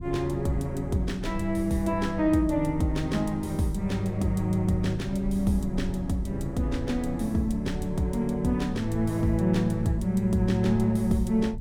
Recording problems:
rumble; below 100 Hz, SNR 12 dB

